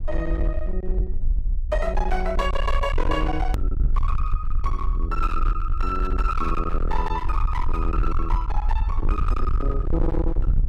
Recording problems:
distorted audio; hard clipping, uneven, signal-to-distortion ratio 7 dB
low-frequency rumble; below 52 Hz, SNR -2 dB
edit click; at 3.5 s

